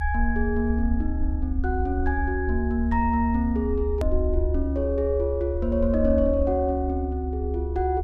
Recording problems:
low-frequency rumble; below 72 Hz, strongest tone 70 Hz, SNR 3 dB
hard cut with a click; at 4 s

